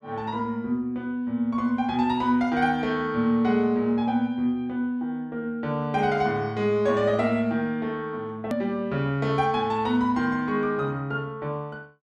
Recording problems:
edit click; at 8.5 s

